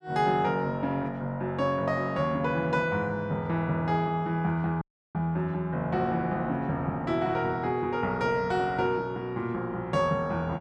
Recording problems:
dropout; at 5 s

